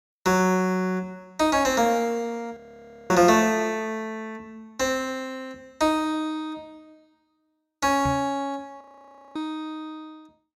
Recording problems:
frozen audio; at 2.5 s for 0.5 s and at 9 s for 0.5 s
microphone thump; at 8 s; peak -3 dB vs average level

